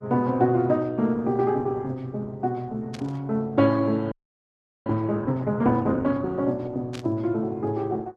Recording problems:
lossy compression; Opus, log-spectral distance 2 dB
static burst; at 3 s and at 7 s; peak -11 dB vs average level
frozen audio; at 4 s for 0.5 s

